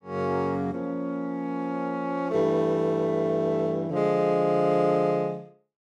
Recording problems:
none

